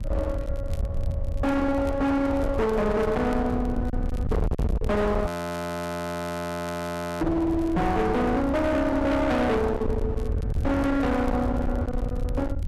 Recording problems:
distortion; hard clipping, signal-to-distortion ratio 6 dB
wind noise; below 270 Hz, SNR 5 dB
crackling; vinyl, SNR 28 dB
frozen audio; at 5.5 s for 2 s

